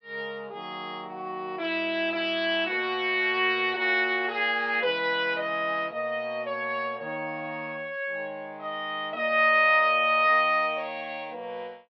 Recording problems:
low-pass filter; nothing above 5.8 kHz

